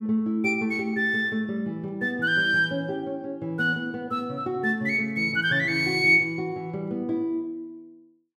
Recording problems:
none

